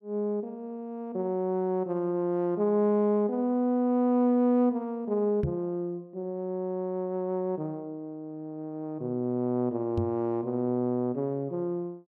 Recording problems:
microphone thump; at 5.5 s and at 10 s; peak +2 dB vs average level

